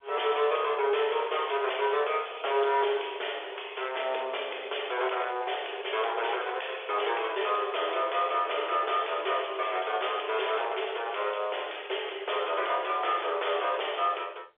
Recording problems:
phone line; 340 Hz to 3.6 kHz, G.711
distortion; soft clipping, signal-to-distortion ratio 9 dB

